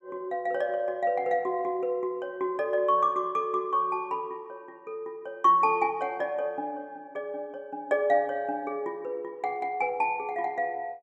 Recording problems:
none

